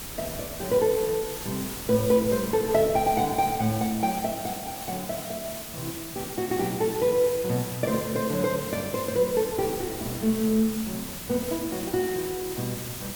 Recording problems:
hiss; SNR 9 dB
wind on the microphone; below 470 Hz, SNR 20 dB

